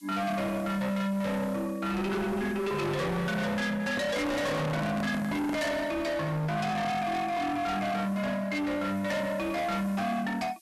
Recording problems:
distorted audio; hard clipping, signal-to-distortion ratio 6 dB
hiss; slope +5 dB per octave, SNR 26 dB
handling noise; from 4 to 5.5 s; peak +1 dB vs average level

